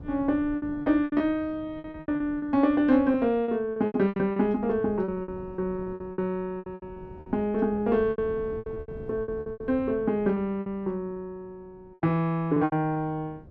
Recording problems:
wind on the microphone; below 300 Hz, SNR 19 dB
packet loss; 16% of the sound replaced, filled with repeated pitch periods

